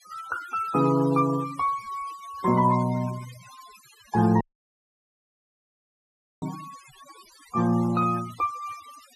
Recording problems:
denoising artefacts; signal-to-artefact ratio 19 dB
dropout; at 4.5 s for 2 s

